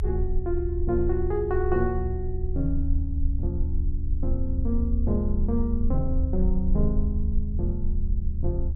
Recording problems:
low-frequency rumble; below 74 Hz, strongest tone 20 Hz, SNR -1 dB

